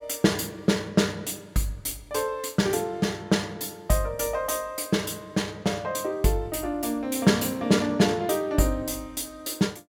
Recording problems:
none

